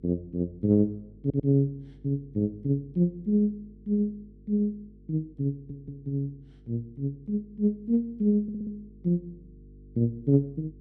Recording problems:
hum; 50 Hz, harmonics up to 450 Hz, SNR 25 dB
stutter; at 1 s, at 5.5 s and at 8.5 s

